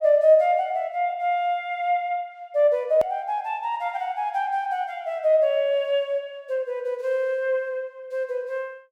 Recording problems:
edit click; at 3 s

